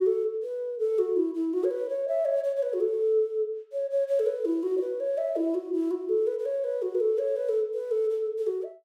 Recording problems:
none

